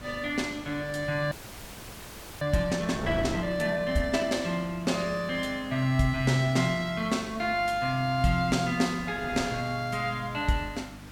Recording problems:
hum; 50 Hz, harmonics up to 300 Hz, SNR 20 dB
background hiss; SNR 21 dB
wind on the microphone; below 540 Hz, SNR 16 dB
frozen audio; at 1.5 s for 1 s

